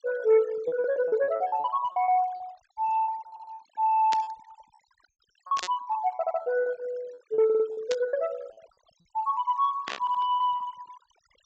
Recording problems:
treble cut off; nothing above 8 kHz
noise reduction artefacts; signal-to-artefact ratio 21 dB
packet loss; 13% of the sound replaced, filled with repeated pitch periods
audio stuttering; 4 times, first at 3.5 s
static burst; 4 times, first at 4 s; peak -1 dB vs average level

